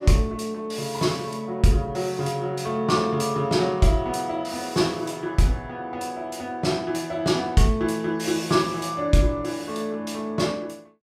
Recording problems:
none

